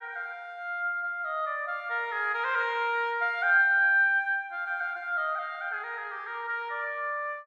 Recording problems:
none

